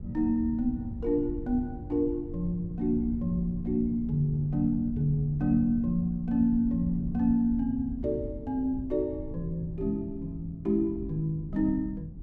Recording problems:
low-frequency rumble; below 140 Hz, SNR 13 dB
wind noise; below 120 Hz, SNR 15 dB

